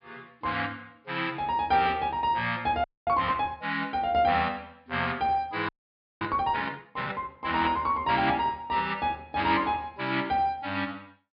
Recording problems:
treble missing; nothing above 5.1 kHz
frozen audio; at 3 s and at 5.5 s for 0.5 s

